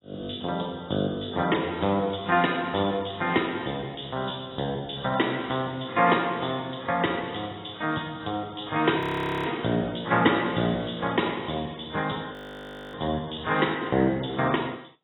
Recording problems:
lossy compression; AAC, log-spectral distance 11 dB, nothing above 3.8 kHz
audio freezing; at 9 s and at 12 s for 0.5 s

